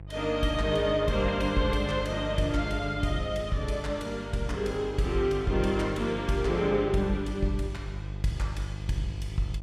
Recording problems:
hum; 50 Hz, harmonics up to 700 Hz, SNR 10 dB

